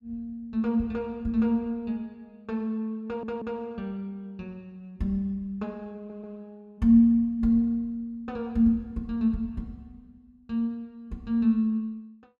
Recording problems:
stutter; at 3 s and at 6 s

